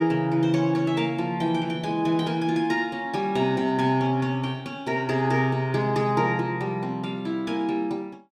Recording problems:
none

